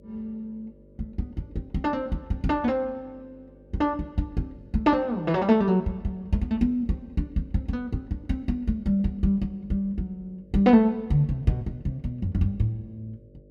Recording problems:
hum; 50 Hz, harmonics up to 600 Hz, SNR 27 dB

